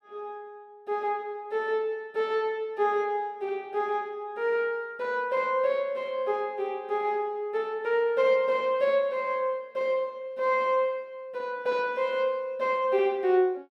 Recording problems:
none

